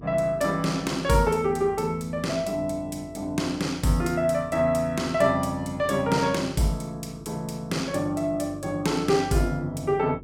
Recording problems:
electrical hum; 50 Hz, harmonics up to 450 Hz, SNR 20 dB

